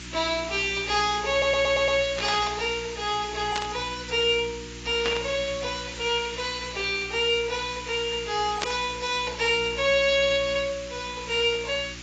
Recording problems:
lossy compression; AAC, log-spectral distance 13 dB, nothing above 7.6 kHz
hum; 60 Hz, harmonics up to 360 Hz, SNR 20 dB
background hiss; SNR 13 dB
audio stuttering; at 1.5 s
burst of static; 4 times, first at 2 s; peak +2 dB vs average level

